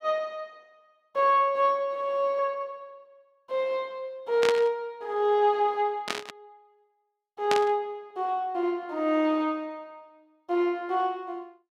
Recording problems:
burst of static; at 4.5 s, at 6 s and at 7.5 s; peak +2 dB vs average level

